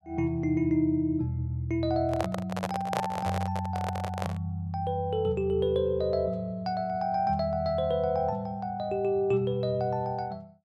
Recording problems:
handling noise; from 2 to 4.5 s; peak +2 dB vs average level

